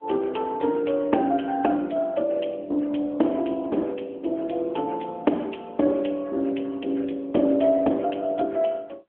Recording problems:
telephone audio; 220 Hz to 3.4 kHz, AMR-NB

